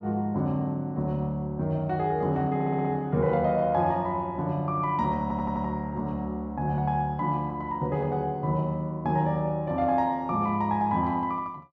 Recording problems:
audio stuttering; at 2.5 s and at 5 s

